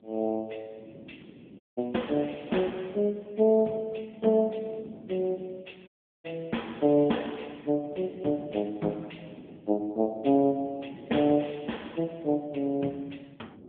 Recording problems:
telephone audio; 130 Hz to 3.5 kHz, AMR-NB
wind on the microphone; below 380 Hz, SNR 22 dB
audio cutting out; at 1.5 s and at 6 s

